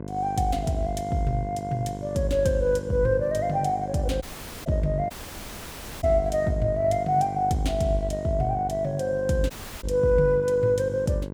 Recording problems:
electrical hum; 50 Hz, harmonics up to 1.1 kHz, SNR 11 dB
dropout; at 4 s, at 5 s for 1 s and at 9.5 s

